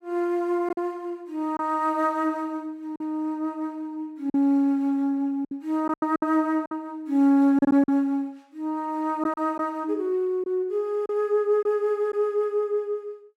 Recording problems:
lost packets; 5% of the sound replaced, filled with silence

